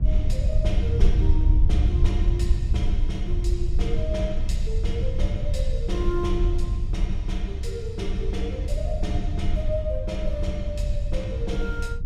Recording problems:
rumble; below 72 Hz, SNR -7 dB

